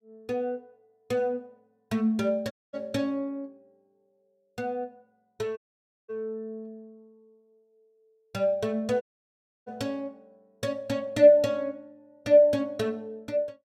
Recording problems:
audio cutting out; at 2.5 s, at 5.5 s for 0.5 s and at 9 s for 0.5 s

